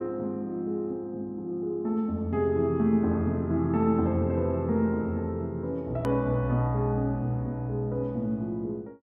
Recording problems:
hard cut with a click; at 6 s

